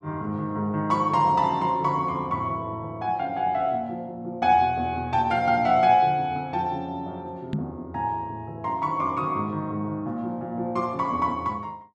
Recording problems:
knock on the microphone; at 7.5 s; peak +1 dB vs average level

